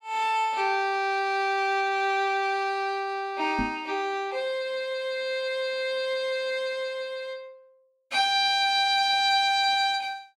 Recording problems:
microphone bump; at 3.5 s; peak -2 dB vs average level

